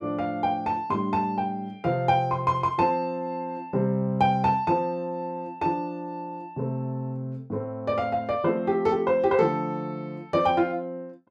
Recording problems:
none

